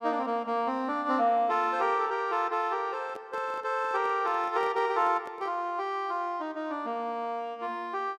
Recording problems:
microphone handling noise; from 3 to 5.5 s; peak -11 dB vs average level

